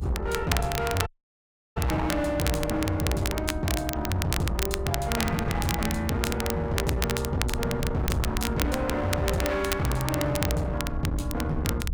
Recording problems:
distorted audio; hard clipping, uneven, signal-to-distortion ratio 7 dB
mains hum; 60 Hz, harmonics up to 480 Hz, SNR 14 dB
low-frequency rumble; below 110 Hz, SNR 7 dB
crackle; vinyl, SNR 6 dB
dropout; at 1 s for 0.5 s

